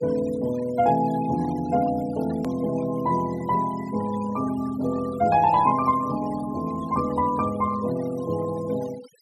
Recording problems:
noise reduction artefacts; signal-to-artefact ratio 18 dB
edit click; at 2.5 s

